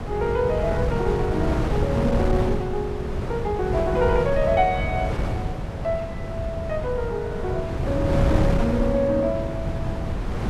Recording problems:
wind on the microphone; below 260 Hz, SNR 1 dB

